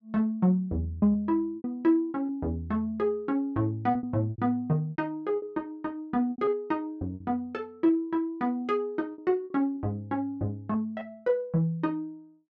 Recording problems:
packet loss; 9% of the sound replaced, filled with repeated pitch periods

